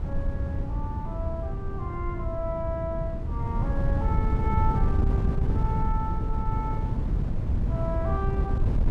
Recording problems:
wind noise; below 130 Hz, SNR -6 dB

